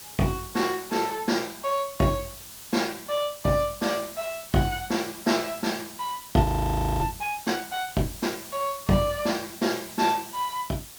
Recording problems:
background hiss; slope 0 dB per octave, SNR 13 dB
frozen audio; at 6.5 s for 0.5 s

